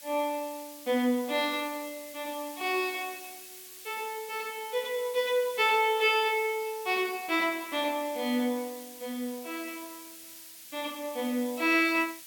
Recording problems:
background hiss; SNR 15 dB

